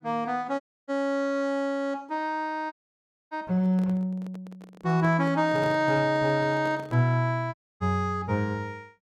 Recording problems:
dropout; at 0.5 s, at 2.5 s for 0.5 s and at 7.5 s
microphone handling noise; from 3.5 to 7 s; peak -7 dB vs average level

